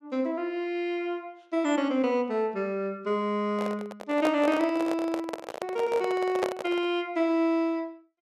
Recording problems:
handling noise; from 3.5 to 7 s; peak +3 dB vs average level

